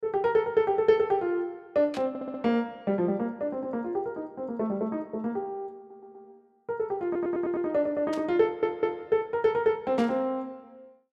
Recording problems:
burst of static; at 2 s, at 8 s and at 10 s; peak -10 dB vs average level
audio stuttering; 4 times, first at 2 s

